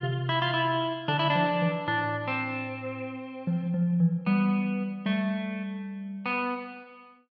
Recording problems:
none

